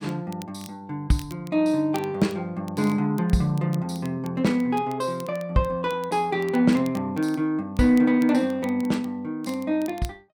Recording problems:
crackle; vinyl, SNR 24 dB

